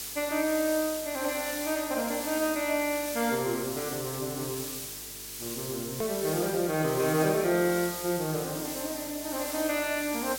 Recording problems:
hum; 50 Hz, harmonics up to 450 Hz, SNR 24 dB
background hiss; slope +2 dB per octave, SNR 6 dB
edit click; at 6 s

